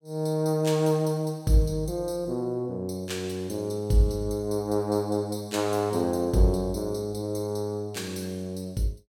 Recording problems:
none

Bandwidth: 16.5 kHz